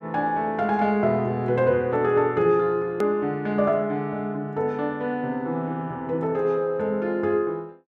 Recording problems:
hard cut with a click; at 3 s

